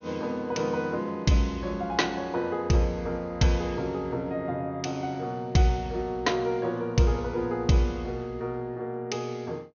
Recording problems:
low-pass filter; nothing above 6.5 kHz

